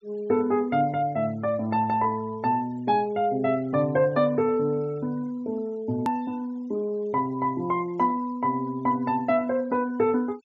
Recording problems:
treble cut off; nothing above 8 kHz
denoising artefacts; signal-to-artefact ratio 28 dB
hard cut with a click; at 6 s

